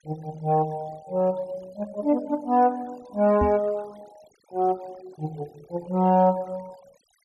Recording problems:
denoising artefacts; signal-to-artefact ratio 25 dB
microphone thump; at 3.5 s; peak +2 dB vs average level

